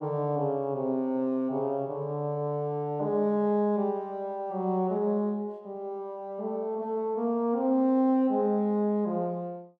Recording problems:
none

